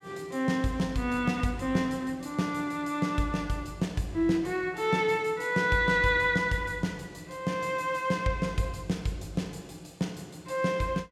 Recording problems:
none

